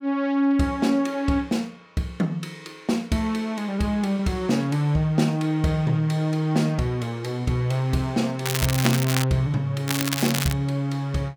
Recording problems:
crackle; at 8.5 s and at 10 s; loose cable, SNR 4 dB

